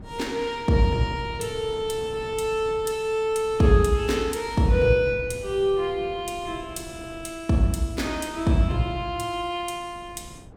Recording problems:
wind noise; below 330 Hz, SNR 20 dB

